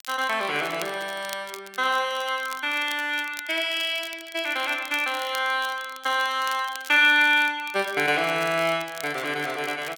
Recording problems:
crackling; vinyl, SNR 18 dB

